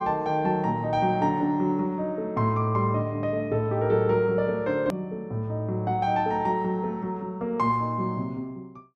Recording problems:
click at an edit; at 5 s

